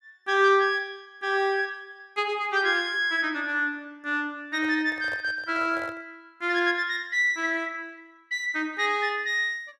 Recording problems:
microphone handling noise; from 4.5 to 6 s; peak -10 dB vs average level

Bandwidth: 13.5 kHz